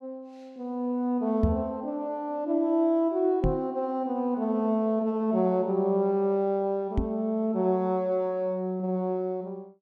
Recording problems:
microphone bump; at 1.5 s, at 3.5 s and at 7 s; peak +5 dB vs average level

